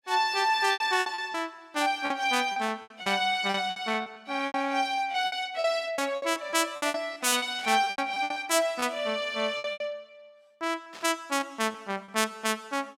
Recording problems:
lost packets; 14% of the sound replaced, filled with repeated pitch periods
burst of static; at 7.5 s and at 11 s; peak -12 dB vs average level

